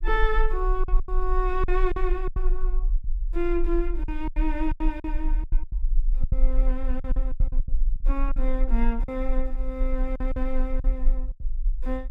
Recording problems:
low-frequency rumble; below 36 Hz, strongest tone 24 Hz, SNR -2 dB
lost packets; 12% of the sound replaced, filled with silence

